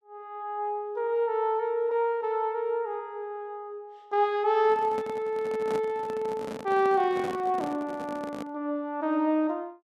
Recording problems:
microphone handling noise; from 4.5 to 8.5 s; peak -5 dB vs average level

